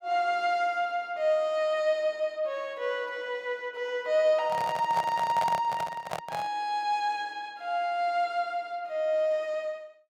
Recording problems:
handling noise; from 4.5 to 6.5 s; peak -1 dB vs average level

